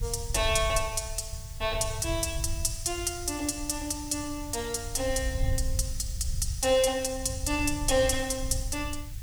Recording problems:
hiss; SNR 19 dB
rumble; below 90 Hz, SNR 8 dB

